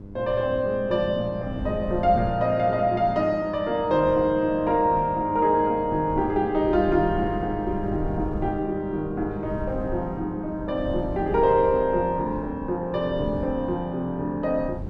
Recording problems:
hum; 50 Hz, harmonics up to 1 kHz, SNR 17 dB
wind on the microphone; below 150 Hz, SNR 14 dB

